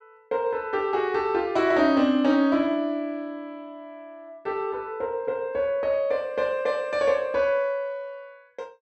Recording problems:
none

